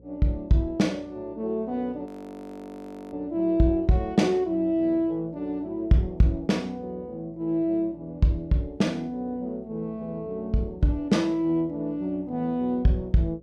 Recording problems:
hum; 60 Hz, harmonics up to 540 Hz, SNR 26 dB
audio freezing; at 2 s for 1 s

